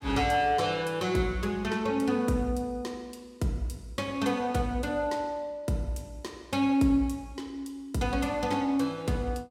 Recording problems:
none

